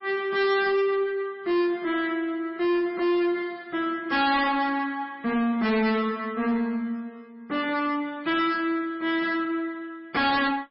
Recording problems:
lossy codec; MP3, log-spectral distance 2 dB, nothing above 4.8 kHz
distortion; soft clipping, signal-to-distortion ratio 6 dB

